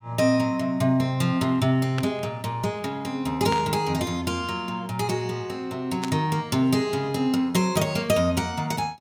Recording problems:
static burst; at 2 s, at 3.5 s and at 6 s; peak -4 dB vs average level

